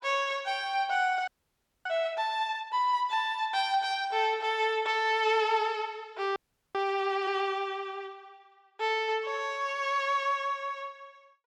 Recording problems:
frozen audio; at 1.5 s for 0.5 s and at 6.5 s

